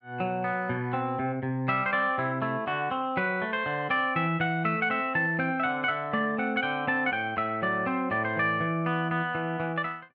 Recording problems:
none

